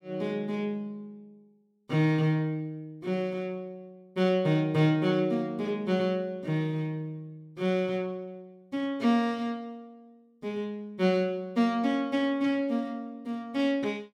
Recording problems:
none

